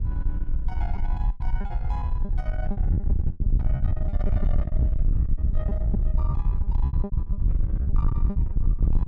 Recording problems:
distortion; soft clipping, signal-to-distortion ratio 11 dB
wind on the microphone; below 70 Hz, SNR -15 dB
packet loss; 13% of the sound replaced, filled with repeated pitch periods

